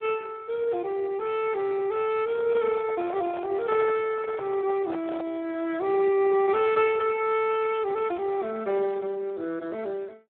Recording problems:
telephone audio; 240 Hz to 3.5 kHz, Speex
microphone handling noise; from 2.5 to 5.5 s; peak -6 dB vs average level

